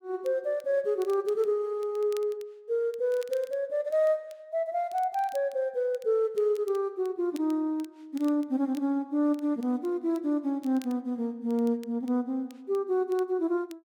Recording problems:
crackle; vinyl, SNR 27 dB

